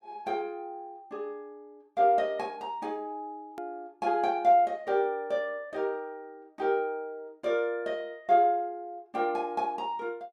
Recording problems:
hard cut with a click; at 3.5 s

